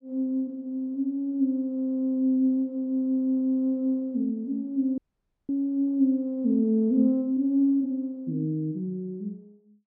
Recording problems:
audio cutting out; at 5 s for 0.5 s

